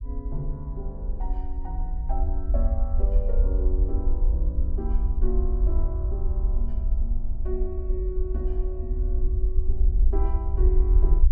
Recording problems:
rumble; below 54 Hz, SNR -10 dB

